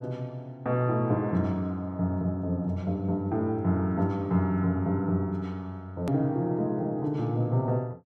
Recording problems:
click at an edit; at 6 s

